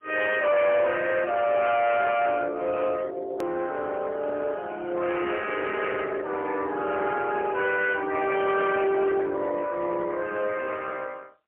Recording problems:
phone line; 220 Hz to 3.3 kHz, AMR-NB, then MP3
distortion; hard clipping, uneven, signal-to-distortion ratio 11 dB
edit click; at 3.5 s

